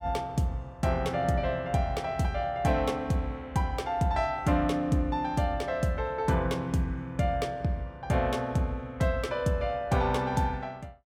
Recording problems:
none

